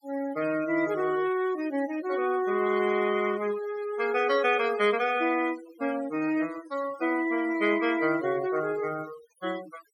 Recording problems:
denoising artefacts; signal-to-artefact ratio 15 dB

